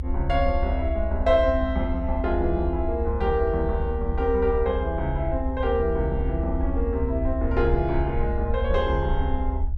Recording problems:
rumble; below 74 Hz, SNR 3 dB

